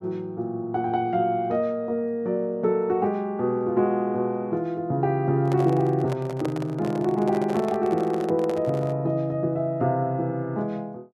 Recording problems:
microphone handling noise; from 5.5 to 9 s; peak -4 dB vs average level

